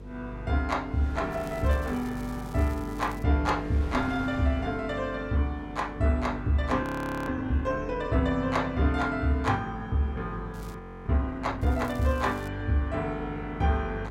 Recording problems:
hum; 50 Hz, harmonics up to 500 Hz, SNR 14 dB
wind noise; below 630 Hz, SNR 21 dB
crackling; from 1.5 to 3 s, at 11 s and at 12 s; loose cable, SNR 24 dB
audio freezing; at 7 s and at 11 s

